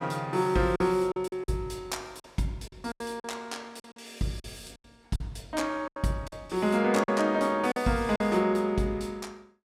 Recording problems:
packet loss; 9% of the sound replaced, filled with silence

